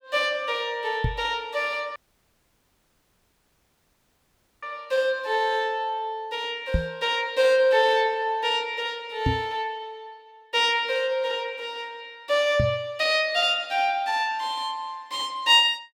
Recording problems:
knock on the microphone; 4 times, first at 1 s; peak +3 dB vs average level
audio cutting out; at 2 s for 2.5 s

